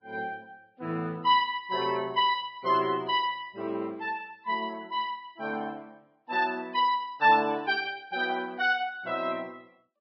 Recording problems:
codec artefacts; Vorbis, log-spectral distance 2 dB

